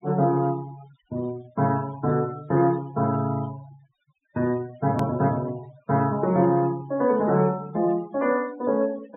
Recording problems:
low-pass filter; nothing above 4 kHz
denoising artefacts; signal-to-artefact ratio 22 dB
click at an edit; at 5 s

